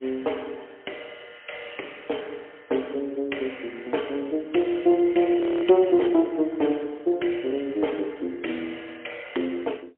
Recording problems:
phone line; 280 Hz to 3.3 kHz, AMR-NB, then MP3
frozen audio; at 5.5 s

